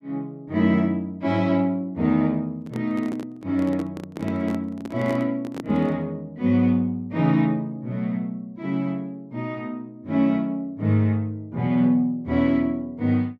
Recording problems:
handling noise; from 2.5 to 6 s; peak -5 dB vs average level

